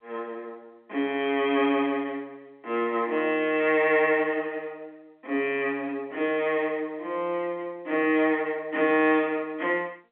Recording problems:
phone line; 240 Hz to 3.6 kHz, G.711

